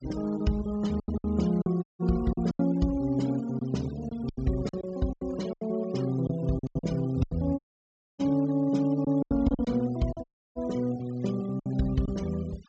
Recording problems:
low-pass filter; nothing above 8 kHz
denoising artefacts; signal-to-artefact ratio 21 dB
packet loss; 10% of the sound replaced, filled with silence
dropout; at 2 s, at 7.5 s for 0.5 s and at 10 s

